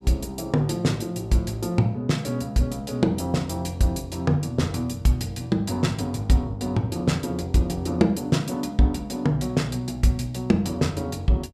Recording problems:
none

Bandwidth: 14.5 kHz